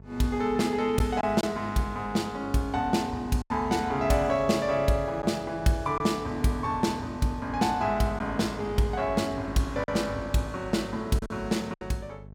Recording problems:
hum; 50 Hz, harmonics up to 850 Hz, SNR 19 dB
lost packets; 3% of the sound replaced, filled with silence

